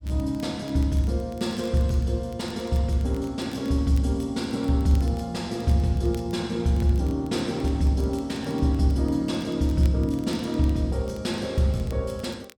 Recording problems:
crackling; vinyl, SNR 27 dB

